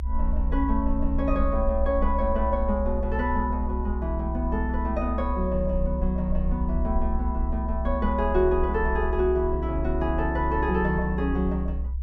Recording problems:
low-frequency rumble; below 64 Hz, strongest tone 64 Hz, SNR 2 dB

